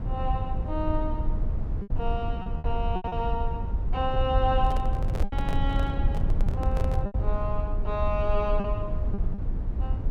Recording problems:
low-frequency rumble; below 76 Hz, SNR -2 dB
packet loss; 5% of the sound replaced, filled with repeated pitch periods
handling noise; from 4.5 to 7 s; peak -2 dB vs average level

